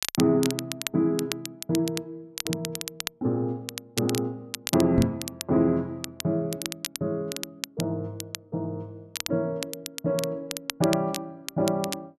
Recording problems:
crackle; vinyl, SNR 7 dB
microphone thump; at 5 s; peak +8 dB vs average level

